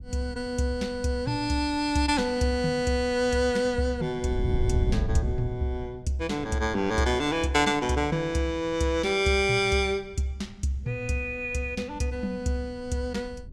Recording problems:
wind noise; below 110 Hz, SNR 10 dB

